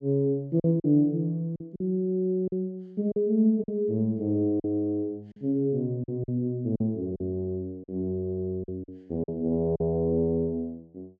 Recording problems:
lost packets; 7% of the sound replaced, filled with silence

